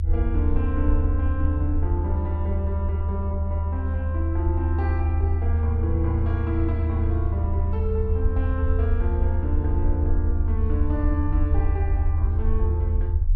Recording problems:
low-frequency rumble; below 80 Hz, strongest tone 80 Hz, SNR -7 dB

